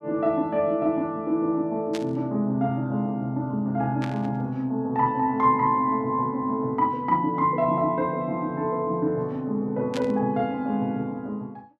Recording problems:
static burst; at 2 s, at 4 s and at 10 s; peak -6 dB vs average level

